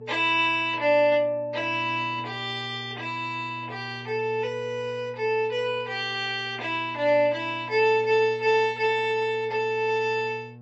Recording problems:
codec artefacts; MP3, log-spectral distance 2 dB, nothing above 7.6 kHz
hum; 60 Hz, harmonics up to 840 Hz, SNR 19 dB

